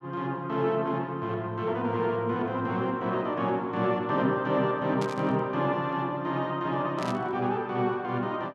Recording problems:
static burst; at 5 s and at 7 s; peak -8 dB vs average level

